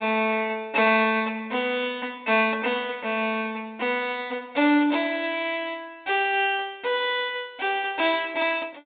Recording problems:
treble cut off; nothing above 4 kHz

